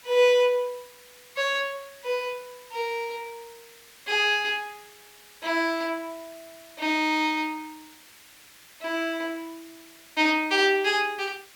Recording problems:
hiss; SNR 23 dB

